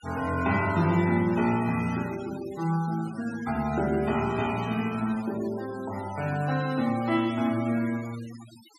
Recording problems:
denoising artefacts; signal-to-artefact ratio 17 dB

